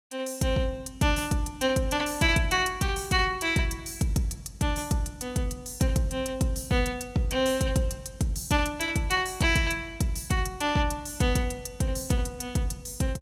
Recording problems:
none

